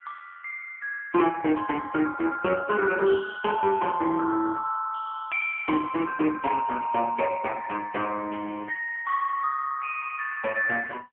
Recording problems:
telephone audio; 240 Hz to 3.1 kHz, AMR-NB

